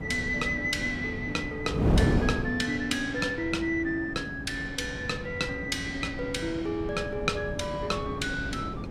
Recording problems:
wind noise; below 310 Hz, SNR 4 dB

